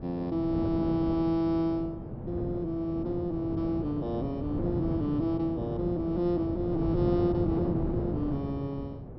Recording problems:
treble cut off; nothing above 5.3 kHz
wind on the microphone; below 320 Hz, SNR 5 dB

